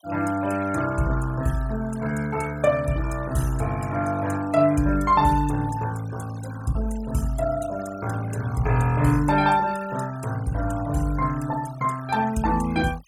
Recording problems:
denoising artefacts; signal-to-artefact ratio 17 dB

